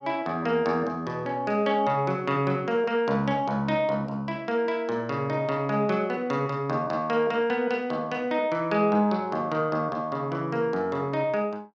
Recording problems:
none

